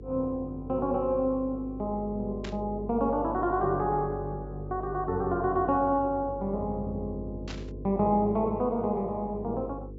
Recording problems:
treble cut off; nothing above 8 kHz
hum; 50 Hz, harmonics up to 500 Hz, SNR 12 dB
static burst; at 2.5 s and at 7.5 s; peak -7 dB vs average level

